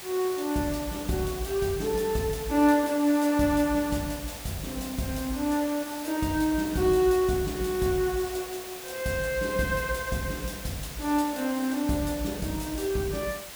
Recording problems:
background hiss; slope -1 dB per octave, SNR 12 dB

